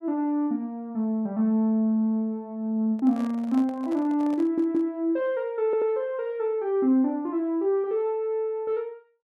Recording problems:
microphone handling noise; from 3 to 5 s; peak -11 dB vs average level
audio stuttering; at 4.5 s and at 5.5 s

